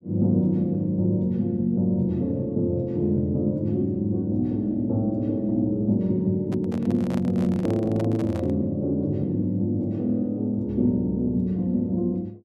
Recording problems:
handling noise; from 6.5 to 8.5 s; peak -8 dB vs average level

